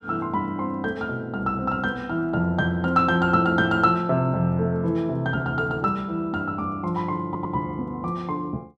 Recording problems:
stutter; at 7.5 s

